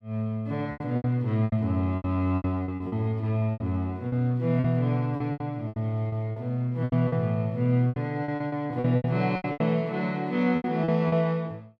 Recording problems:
lost packets; 15% of the sound replaced, filled with repeated pitch periods

